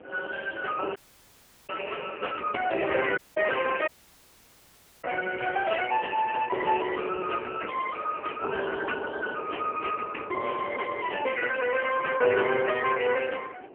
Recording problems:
phone line; 320 Hz to 3 kHz, AMR-NB
wind on the microphone; below 580 Hz, SNR 19 dB
dropout; at 1 s for 0.5 s, at 3 s and at 4 s for 1 s

